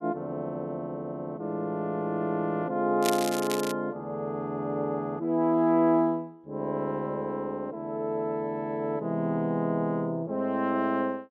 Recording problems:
crackling; at 3 s; loose cable, SNR 7 dB

